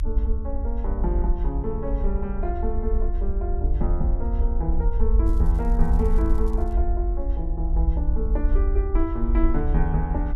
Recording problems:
low-frequency rumble; below 56 Hz, SNR -5 dB
crackle; from 5.5 to 6.5 s; loose cable, SNR 27 dB

